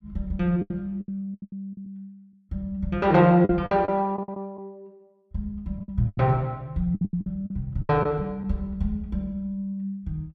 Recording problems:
lost packets; 11% of the sound replaced, filled with the last packet

